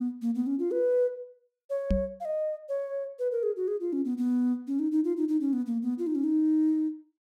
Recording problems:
knock on the microphone; at 2 s; peak +4 dB vs average level

